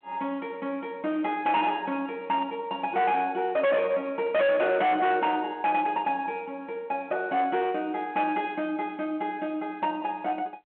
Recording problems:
telephone audio; 580 Hz to 3.7 kHz, G.726
distortion; hard clipping, uneven, signal-to-distortion ratio 6 dB

